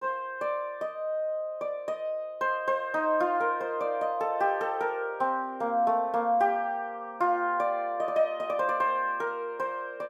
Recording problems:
none

